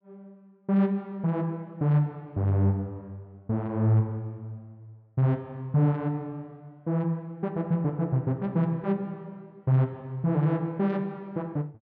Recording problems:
none

